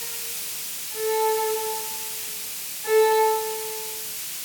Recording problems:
hiss; slope +3 dB per octave, SNR 5 dB

